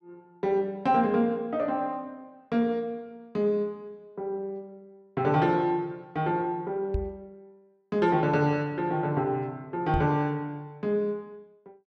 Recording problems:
knock on the microphone; at 7 s and at 10 s; peak +1 dB vs average level

